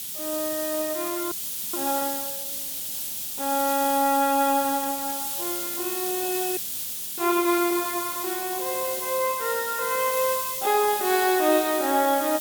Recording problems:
background hiss; SNR 3 dB
audio freezing; at 1.5 s and at 6.5 s for 0.5 s

